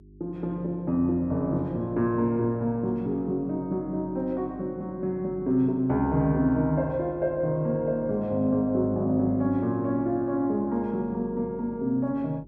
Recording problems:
electrical hum; 50 Hz, harmonics up to 400 Hz, SNR 23 dB

